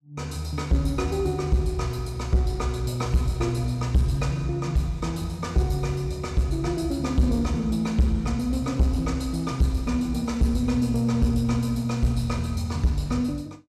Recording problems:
distortion; soft clipping, signal-to-distortion ratio 11 dB

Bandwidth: 14.5 kHz